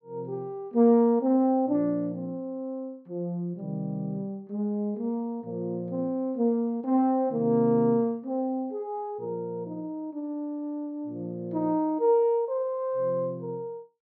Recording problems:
none

